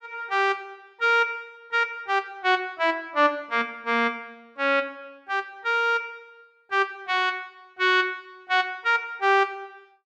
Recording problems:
none

